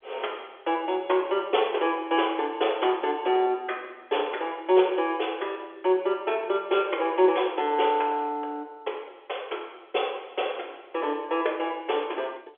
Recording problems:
telephone audio; 300 Hz to 3.5 kHz, G.711

